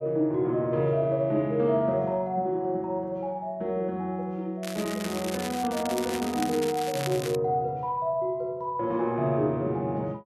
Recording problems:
crackle; from 4.5 to 7.5 s; loose cable, SNR 10 dB

